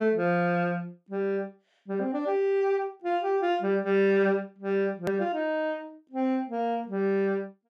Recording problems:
edit click; at 5 s

